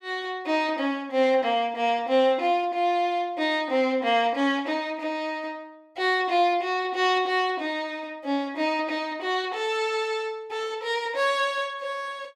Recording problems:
none

